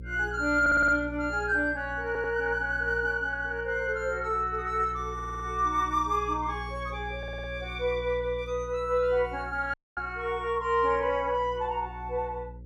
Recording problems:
hum; 60 Hz, harmonics up to 540 Hz, SNR 14 dB
audio stuttering; 4 times, first at 0.5 s
audio cutting out; at 9.5 s

